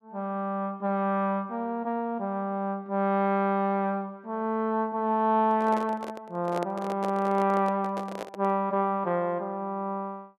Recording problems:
handling noise; from 5.5 to 8.5 s; peak -3 dB vs average level

